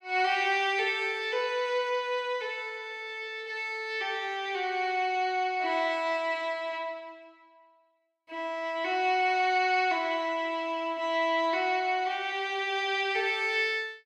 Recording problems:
none

